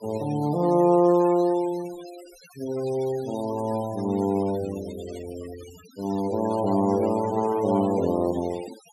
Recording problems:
denoising artefacts; signal-to-artefact ratio 20 dB

